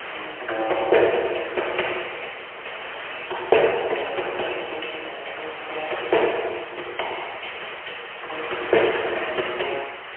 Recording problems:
phone line; 320 Hz to 3.2 kHz, AMR-NB, then MP3
background hiss; SNR 9 dB

